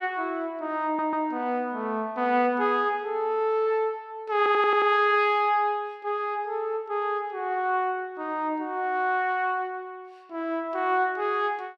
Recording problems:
audio stuttering; at 1 s and at 4.5 s

